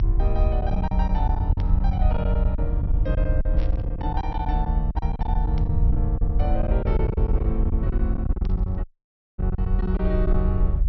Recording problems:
treble missing; nothing above 5.8 kHz
rumble; below 70 Hz, strongest tone 38 Hz, SNR -5 dB
packet loss; 12% of the sound replaced, filled with silence
static burst; 4 times, first at 1.5 s; peak -10 dB vs average level
audio cutting out; at 9 s for 0.5 s

